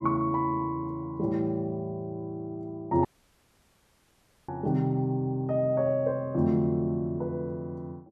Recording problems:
audio cutting out; at 3 s for 1.5 s

